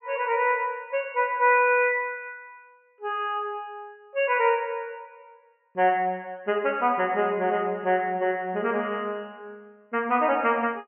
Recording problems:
treble missing; nothing above 3 kHz

